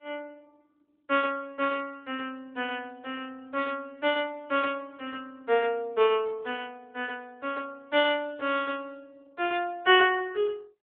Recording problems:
telephone audio; 300 Hz to 3.5 kHz, AMR-NB

